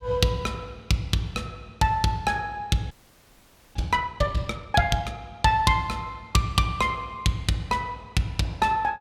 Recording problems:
audio freezing; at 3 s for 1 s

